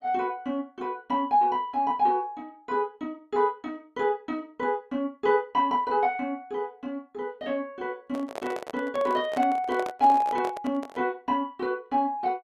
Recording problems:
microphone handling noise; from 8 to 11 s; peak -4 dB vs average level

